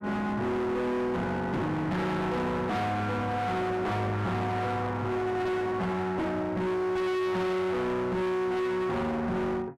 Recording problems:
distortion; hard clipping, uneven, signal-to-distortion ratio 5 dB

